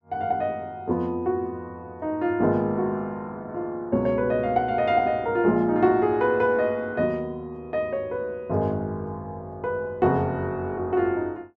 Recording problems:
none

